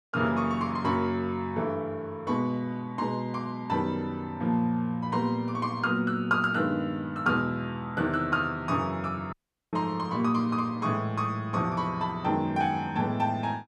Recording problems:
dropout; at 9.5 s

